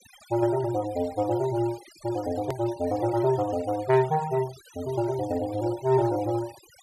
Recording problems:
noise reduction artefacts; signal-to-artefact ratio 19 dB
edit click; at 2.5 s

